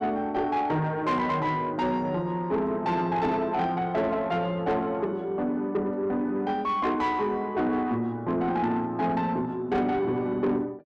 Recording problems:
distorted audio; soft clipping, signal-to-distortion ratio 12 dB

